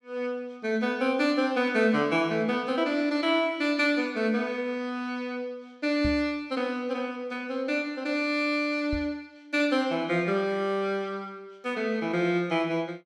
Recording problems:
microphone thump; at 6 s and at 9 s; peak -1 dB vs average level

